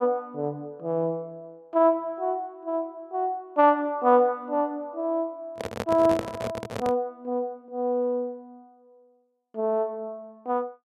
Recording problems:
microphone handling noise; from 5.5 to 7 s; peak 0 dB vs average level

